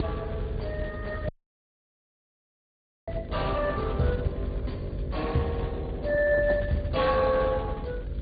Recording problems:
treble missing; nothing above 4.6 kHz
codec artefacts; Speex, log-spectral distance 2 dB
mains hum; 50 Hz, harmonics up to 650 Hz, SNR 13 dB
low-frequency rumble; below 110 Hz, SNR 7 dB
dropout; at 1.5 s for 2 s

